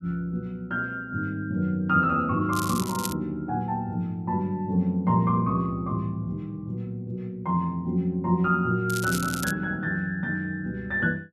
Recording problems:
crackling; at 2.5 s and at 9 s; loose cable, SNR 8 dB

